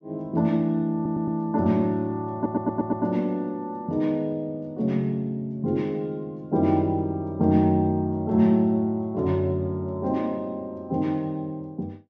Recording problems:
treble cut off; nothing above 8 kHz
audio stuttering; at 1 s and at 2.5 s

